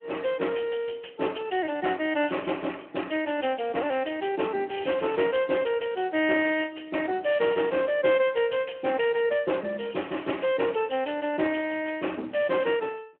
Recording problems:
phone line; 240 Hz to 3.1 kHz, Speex

